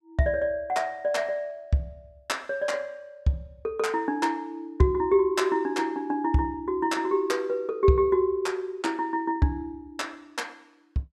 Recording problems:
none

